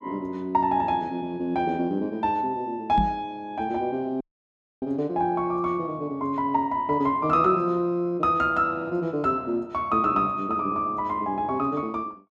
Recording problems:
knock on the microphone; at 3 s; peak +2 dB vs average level
audio cutting out; at 4 s for 0.5 s

